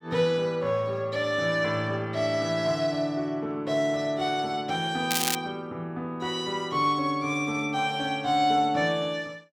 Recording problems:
crackling; at 5 s; loose cable, SNR 1 dB

